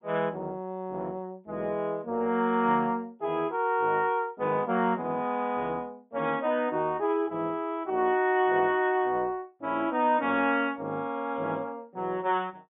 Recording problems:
treble missing; nothing above 3.6 kHz

